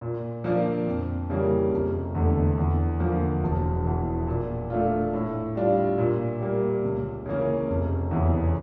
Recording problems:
none

